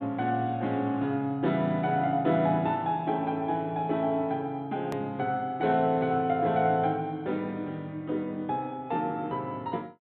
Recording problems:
low-pass filter; nothing above 4 kHz
click at an edit; at 5 s

